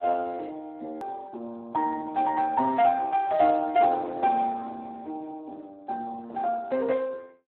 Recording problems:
telephone audio; 240 Hz to 2.8 kHz, Speex
edit click; at 1 s

